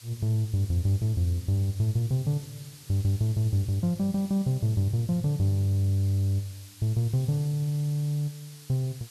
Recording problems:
background hiss; slope +2 dB per octave, SNR 21 dB

